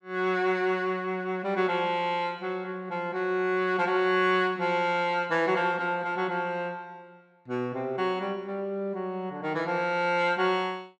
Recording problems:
none

